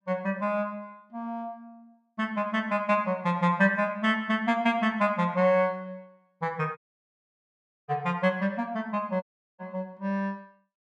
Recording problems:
audio cutting out; at 7 s for 1 s and at 9 s

